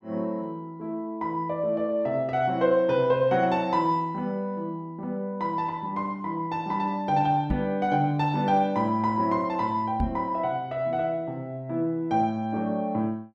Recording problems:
microphone bump; at 7.5 s and at 10 s; peak +2 dB vs average level

